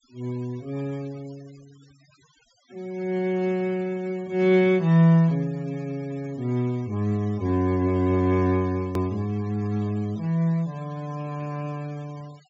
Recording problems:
low-pass filter; nothing above 8 kHz
denoising artefacts; signal-to-artefact ratio 26 dB
hard cut with a click; at 9 s

